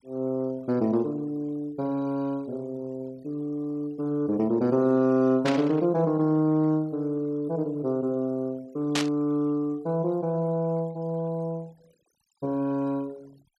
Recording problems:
noise reduction artefacts; signal-to-artefact ratio 27 dB
static burst; at 5.5 s and at 9 s; peak +3 dB vs average level

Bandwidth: 13 kHz